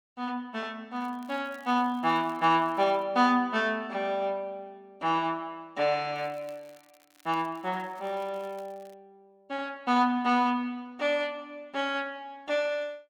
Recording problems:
crackling; from 1 to 3 s and from 6 to 9 s; loose cable, SNR 30 dB

